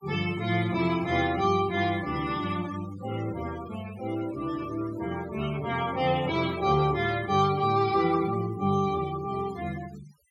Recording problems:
denoising artefacts; signal-to-artefact ratio 18 dB

